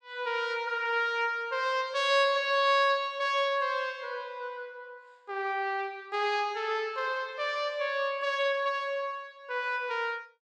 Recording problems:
none

